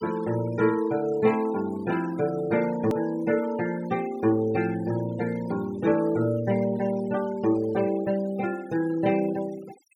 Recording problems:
noise reduction artefacts; signal-to-artefact ratio 18 dB
click at an edit; at 3 s

